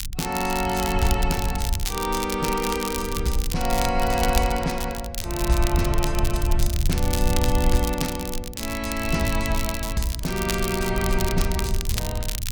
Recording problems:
rumble; below 74 Hz, SNR 3 dB
crackle; vinyl, SNR 6 dB

